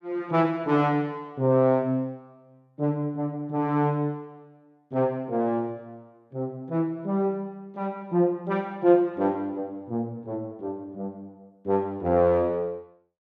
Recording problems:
none

